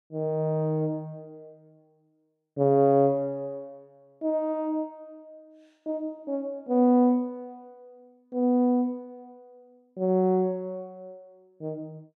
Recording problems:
none

